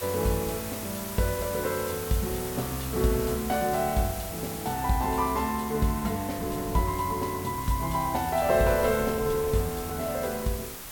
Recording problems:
hiss; slope -1 dB per octave, SNR 9 dB
wind noise; below 350 Hz, SNR 17 dB

